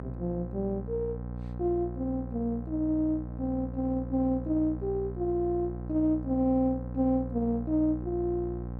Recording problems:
electrical hum; 60 Hz, harmonics up to 1.1 kHz, SNR 8 dB

